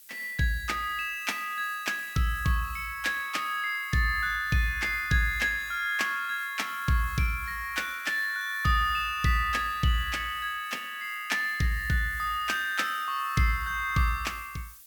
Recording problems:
hiss; SNR 19 dB

